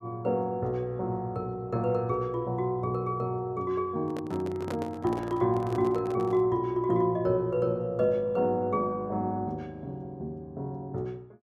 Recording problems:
microphone handling noise; from 4 to 6.5 s; peak -2 dB vs average level

